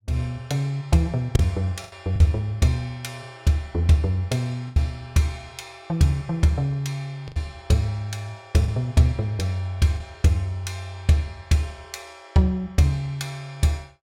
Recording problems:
packet loss; 3% of the sound replaced, filled with the last packet

